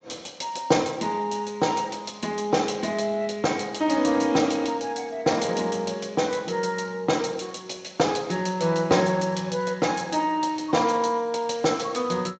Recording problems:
lossy codec; Speex, log-spectral distance 6 dB, nothing above 7.3 kHz

